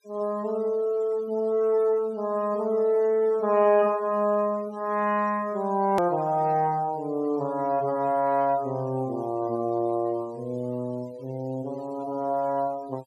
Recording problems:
noise reduction artefacts; signal-to-artefact ratio 27 dB
click at an edit; at 6 s

